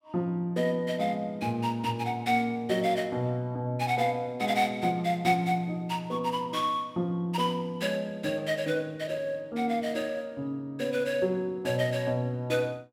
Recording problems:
none

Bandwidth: 16 kHz